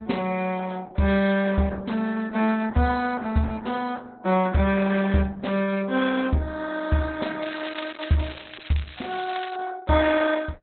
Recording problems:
codec artefacts; Opus, log-spectral distance 7 dB, nothing above 3.7 kHz
crackle; from 7.5 to 9.5 s; loose cable, SNR 14 dB

